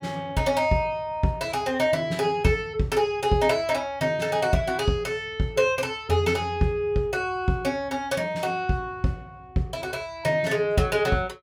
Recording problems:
none

